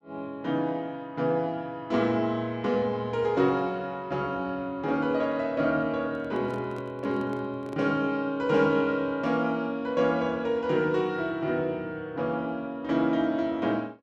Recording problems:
handling noise; from 6 to 8 s; peak -11 dB vs average level

